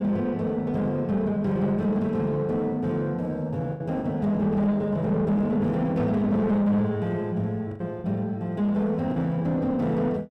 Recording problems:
distortion; soft clipping, signal-to-distortion ratio 11 dB
packet loss; 3% of the sound replaced, filled with the last packet

